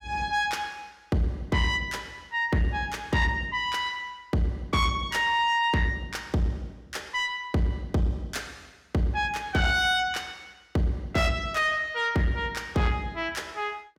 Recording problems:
distorted audio; soft clipping, signal-to-distortion ratio 11 dB

